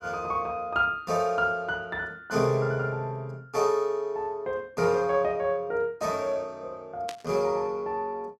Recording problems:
static burst; at 7 s; peak -6 dB vs average level

